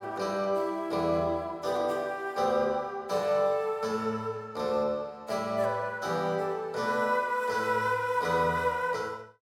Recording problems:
none

